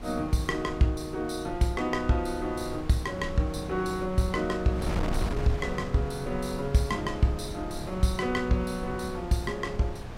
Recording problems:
wind noise; below 260 Hz, SNR 9 dB

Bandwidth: 16 kHz